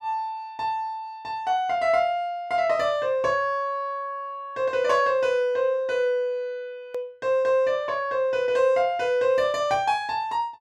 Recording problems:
click at an edit; at 7 s

